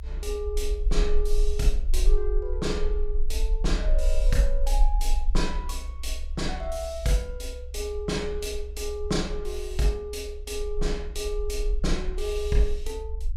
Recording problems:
low-frequency rumble; below 40 Hz, strongest tone 18 Hz, SNR 0 dB

